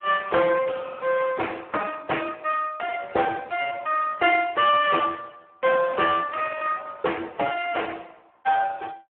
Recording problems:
phone line; 340 Hz to 2.8 kHz, Speex

